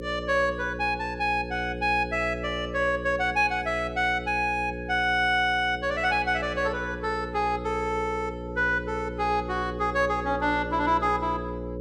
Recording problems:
hum; 60 Hz, harmonics up to 540 Hz, SNR 9 dB

